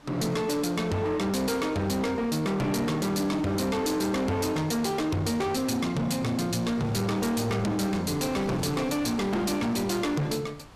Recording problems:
distorted audio; hard clipping, signal-to-distortion ratio 7 dB
wind on the microphone; below 2 kHz, SNR 22 dB

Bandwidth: 14.5 kHz